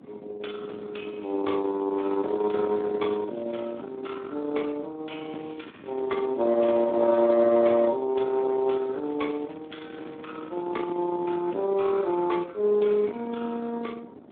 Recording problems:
phone line; 220 Hz to 3.5 kHz, Speex
distorted audio; soft clipping, signal-to-distortion ratio 17 dB
wind noise; below 610 Hz, SNR 13 dB
crackling; from 2 to 4 s, from 5.5 to 7 s and from 9 to 12 s; loose cable, SNR 30 dB

